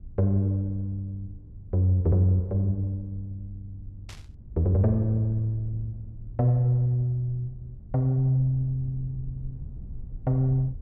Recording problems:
low-frequency rumble; below 90 Hz, SNR 18 dB
static burst; at 4 s; peak -14 dB vs average level

